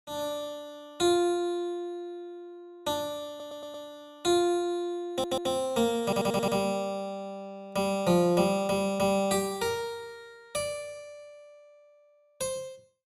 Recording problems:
audio stuttering; at 3.5 s, at 5 s and at 6 s

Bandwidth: 15 kHz